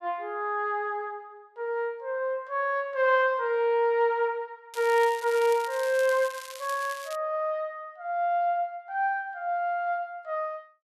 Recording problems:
crackle; from 4.5 to 7 s; loose cable, SNR 15 dB

